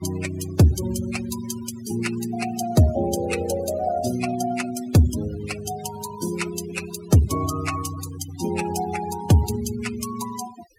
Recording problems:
noise reduction artefacts; signal-to-artefact ratio 11 dB

